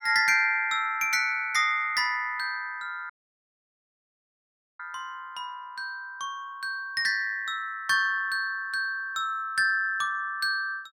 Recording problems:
dropout; at 3 s for 1.5 s

